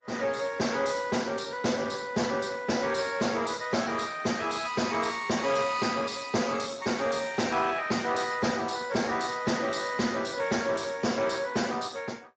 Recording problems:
lossy compression; Opus, then Speex, log-spectral distance 6 dB, nothing above 7.3 kHz
distortion; soft clipping, signal-to-distortion ratio 10 dB

